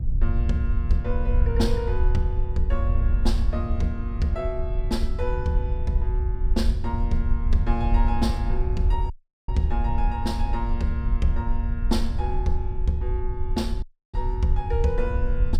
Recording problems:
rumble; below 66 Hz, SNR -3 dB
wind on the microphone; below 250 Hz, SNR 18 dB
audio cutting out; at 9 s and at 14 s

